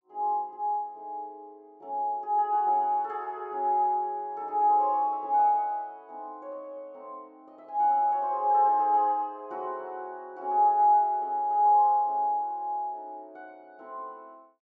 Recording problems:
treble cut off; nothing above 8 kHz

